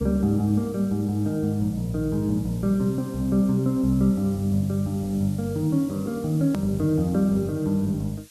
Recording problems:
background hiss; slope +3 dB per octave, SNR 24 dB
click at an edit; at 6.5 s

